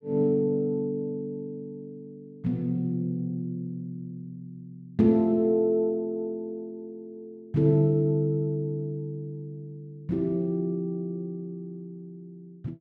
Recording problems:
none

